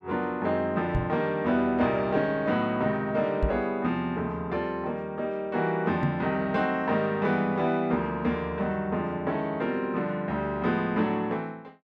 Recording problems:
knock on the microphone; at 1 s, at 3.5 s and at 6 s; peak +4 dB vs average level

